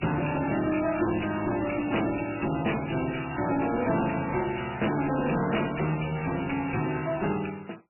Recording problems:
lossy compression; MP3, log-spectral distance 12 dB, nothing above 2.9 kHz
distortion; hard clipping, uneven, signal-to-distortion ratio 7 dB

